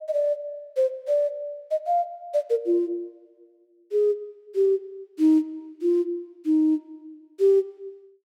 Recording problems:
none

